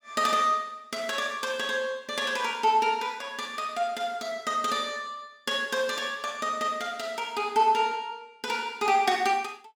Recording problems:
none

